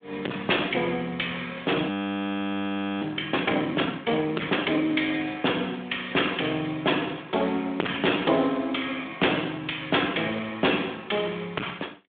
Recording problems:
phone line; 280 Hz to 3.5 kHz, Speex
distortion; soft clipping, signal-to-distortion ratio 9 dB
frozen audio; at 2 s for 1 s

